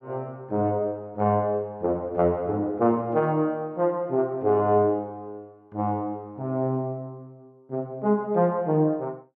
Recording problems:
none

